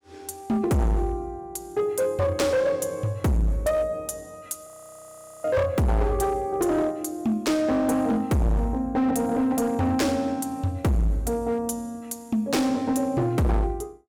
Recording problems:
distortion; hard clipping, signal-to-distortion ratio 7 dB
audio freezing; at 4.5 s for 1 s

